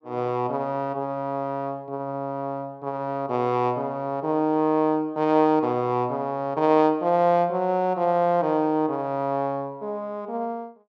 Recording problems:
none

